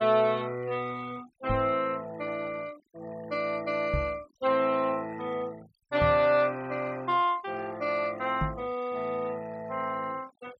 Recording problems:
noise reduction artefacts; signal-to-artefact ratio 23 dB
microphone thump; 4 times, first at 1.5 s; peak +2 dB vs average level

